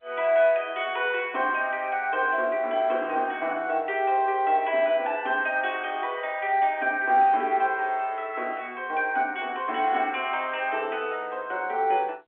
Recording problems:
telephone audio; 280 Hz to 3.4 kHz, G.711

